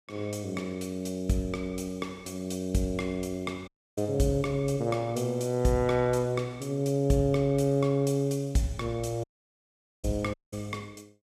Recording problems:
audio cutting out; at 3.5 s, at 9 s for 1 s and at 10 s

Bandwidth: 15.5 kHz